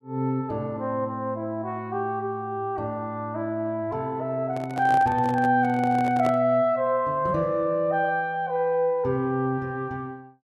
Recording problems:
microphone handling noise; from 4.5 to 6.5 s; peak -3 dB vs average level

